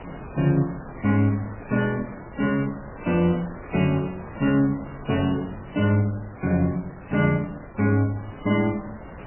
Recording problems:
lossy compression; MP3, log-spectral distance 4 dB, nothing above 2.9 kHz
wind on the microphone; below 1 kHz, SNR 16 dB

